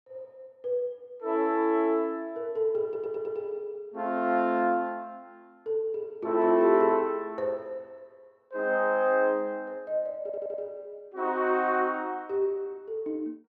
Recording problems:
audio stuttering; at 3 s and at 10 s

